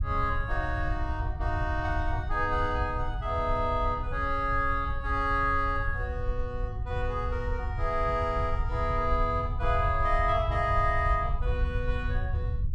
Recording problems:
rumble; below 86 Hz, SNR 3 dB

